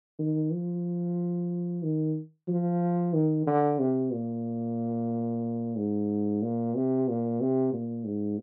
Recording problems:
none

